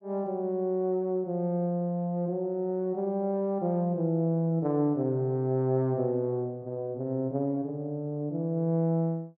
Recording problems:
none

